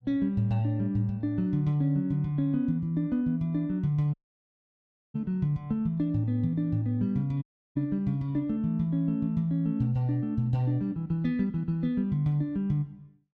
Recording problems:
audio cutting out; at 4 s for 1 s and at 7.5 s

